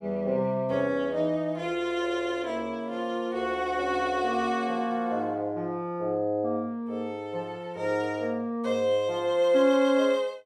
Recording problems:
none

